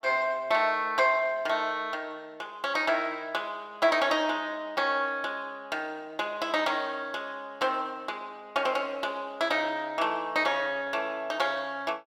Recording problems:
none

